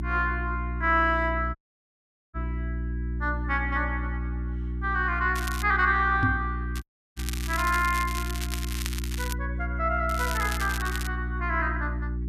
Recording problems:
electrical hum; 60 Hz, harmonics up to 360 Hz, SNR 5 dB
audio cutting out; at 1.5 s for 1 s and at 7 s
crackling; at 5.5 s, from 7 to 9.5 s and at 10 s; loose cable, SNR 10 dB
knock on the microphone; at 6 s; peak +5 dB vs average level

